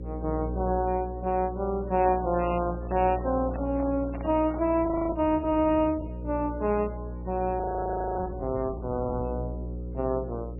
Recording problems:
lossy compression; MP3, log-spectral distance 2 dB, nothing above 2.8 kHz
hum; 60 Hz, harmonics up to 540 Hz, SNR 9 dB
microphone handling noise; from 2 to 5 s; peak -7 dB vs average level
frozen audio; at 5 s and at 7.5 s for 0.5 s

